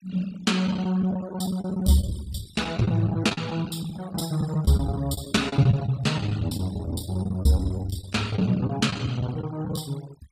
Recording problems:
noise reduction artefacts; signal-to-artefact ratio 21 dB
packet loss; 15% of the sound replaced, filled with the last packet

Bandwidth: 15.5 kHz